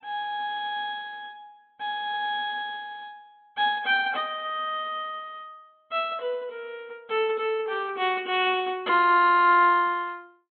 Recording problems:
treble missing; nothing above 3.4 kHz
lossy codec; MP3, log-spectral distance 2 dB

